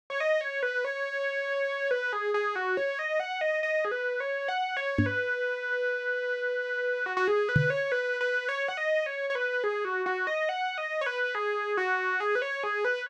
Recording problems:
knock on the microphone; at 5 s and at 7.5 s; peak +8 dB vs average level

